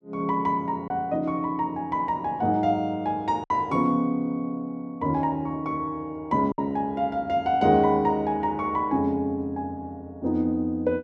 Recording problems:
lost packets; 1.3% of the sound replaced, filled with silence

